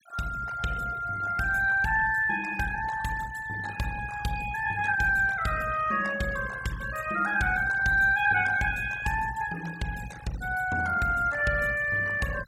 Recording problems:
noise reduction artefacts; signal-to-artefact ratio 17 dB

